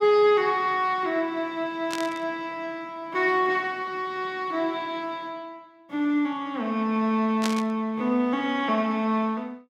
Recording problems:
burst of static; at 2 s and at 7.5 s; peak 0 dB vs average level

